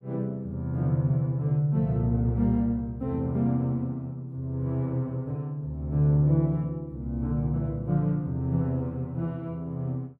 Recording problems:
none

